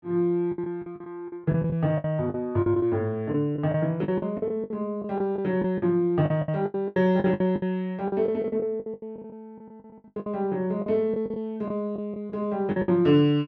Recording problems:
packet loss; 16% of the sound replaced, filled with the last packet

